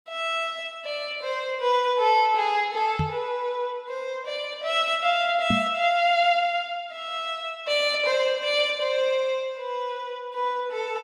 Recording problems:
knock on the microphone; at 3 s and at 5.5 s; peak +2 dB vs average level

